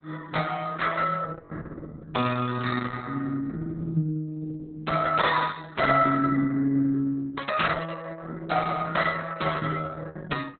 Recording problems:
lossy compression; Opus, log-spectral distance 5 dB, nothing above 4 kHz

